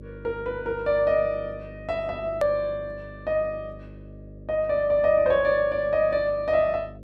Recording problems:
electrical hum; 50 Hz, harmonics up to 600 Hz, SNR 19 dB
click at an edit; at 2.5 s

